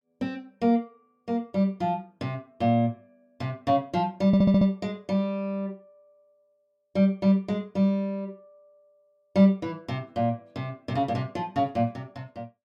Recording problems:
stutter; at 4.5 s

